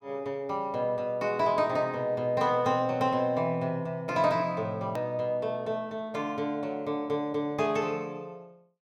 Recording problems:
edit click; at 5 s

